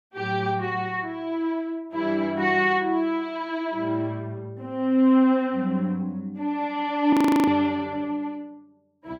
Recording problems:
audio freezing; at 7 s

